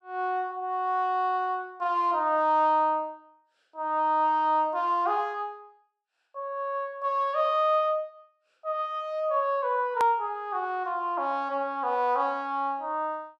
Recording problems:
click at an edit; at 10 s

